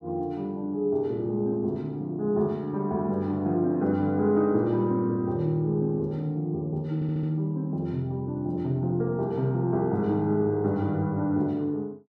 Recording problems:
stutter; at 7 s

